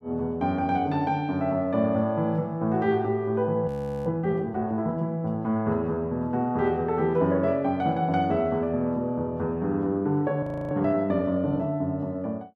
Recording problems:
audio freezing; at 3.5 s and at 10 s

